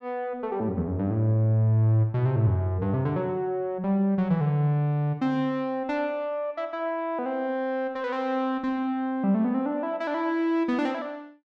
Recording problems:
none

